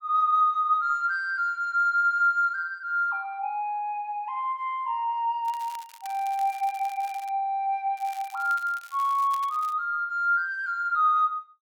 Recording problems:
crackling; from 5.5 to 7.5 s and from 8 to 9.5 s; loose cable, SNR 23 dB

